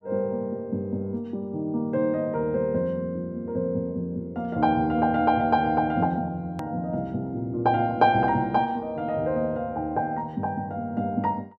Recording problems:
click at an edit; at 6.5 s

